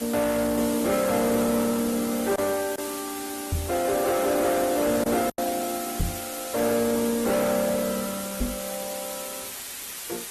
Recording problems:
codec artefacts; Opus, log-spectral distance 9 dB
distortion; soft clipping, signal-to-distortion ratio 10 dB
background hiss; slope 0 dB per octave, SNR 10 dB
packet loss; 1.5% of the sound replaced, filled with silence
microphone thump; at 3.5 s, at 6 s and at 8.5 s; peak +3 dB vs average level

